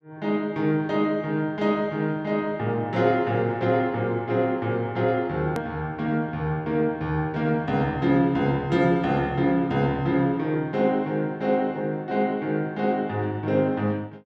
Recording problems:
hard cut with a click; at 5.5 s

